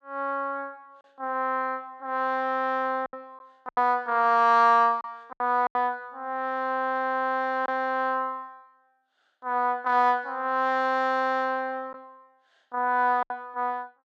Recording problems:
packet loss; 4% of the sound replaced, filled with silence

